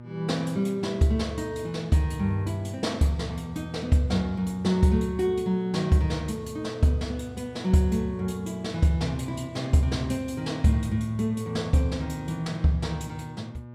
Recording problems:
hum; 60 Hz, harmonics up to 1.4 kHz, SNR 18 dB

